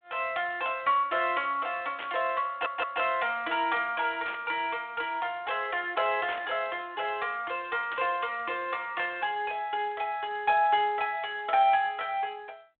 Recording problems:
phone line; 280 Hz to 3.7 kHz, G.726
static burst; 4 times, first at 2 s; peak -5 dB vs average level
stutter; at 2.5 s

